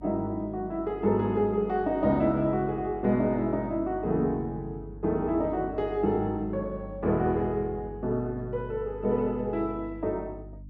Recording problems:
hum; 50 Hz, harmonics up to 300 Hz, SNR 16 dB

